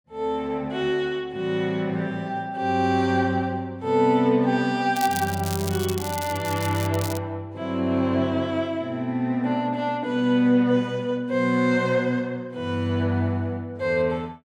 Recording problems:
crackling; from 5 to 7 s and at 7 s; loose cable, SNR 11 dB

